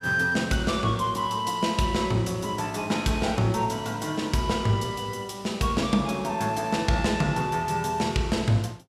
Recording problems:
none

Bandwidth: 15 kHz